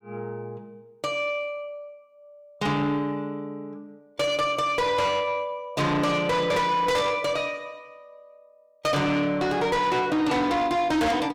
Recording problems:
distortion; soft clipping, signal-to-distortion ratio 7 dB

